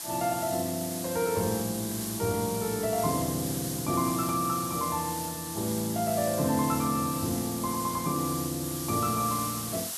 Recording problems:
background hiss; SNR 5 dB

